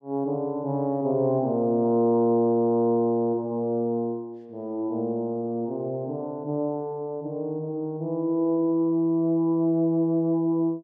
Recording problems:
none

